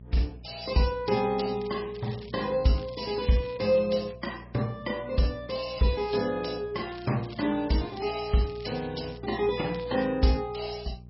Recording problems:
codec artefacts; MP3, log-spectral distance 7 dB, nothing above 5.5 kHz
hum; 60 Hz, harmonics up to 600 Hz, SNR 19 dB
crackle; from 1 to 4 s, from 7 to 9 s and at 9.5 s; loose cable, SNR 21 dB

